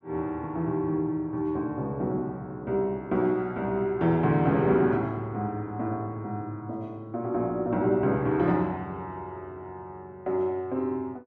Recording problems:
none

